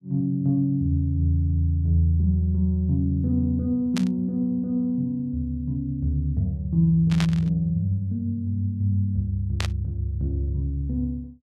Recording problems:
static burst; at 4 s, at 7 s and at 9.5 s; peak -1 dB vs average level

